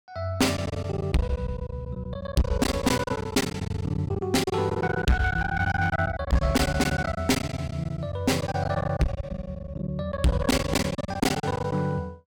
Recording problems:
distortion; hard clipping, uneven, signal-to-distortion ratio 6 dB
lost packets; 16% of the sound replaced, filled with silence

